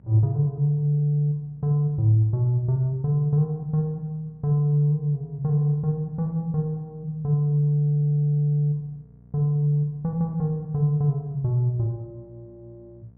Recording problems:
electrical hum; 60 Hz, harmonics up to 720 Hz, SNR 28 dB

